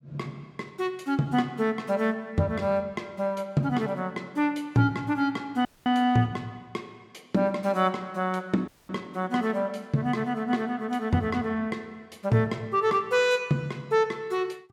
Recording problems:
dropout; at 5.5 s and at 8.5 s

